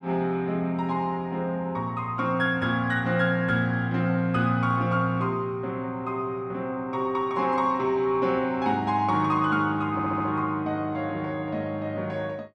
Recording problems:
stutter; at 10 s

